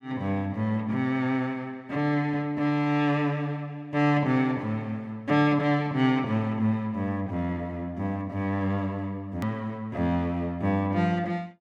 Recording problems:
hard cut with a click; at 9.5 s

